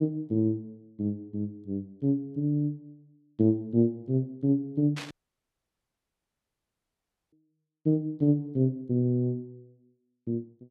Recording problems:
static burst; at 5 s; peak -6 dB vs average level
dropout; at 5 s for 2 s

